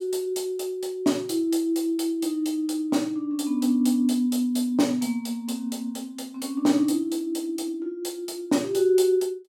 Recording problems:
none

